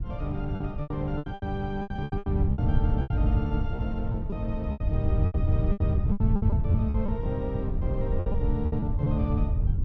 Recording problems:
wind on the microphone; below 110 Hz, SNR -4 dB
lost packets; 15% of the sound replaced, filled with repeated pitch periods

